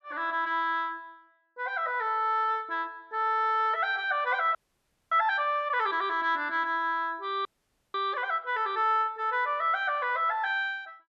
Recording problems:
frozen audio; at 4.5 s for 0.5 s and at 7.5 s

